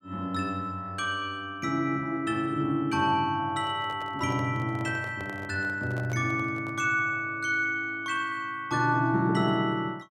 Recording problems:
handling noise; from 3.5 to 7 s; peak -9 dB vs average level

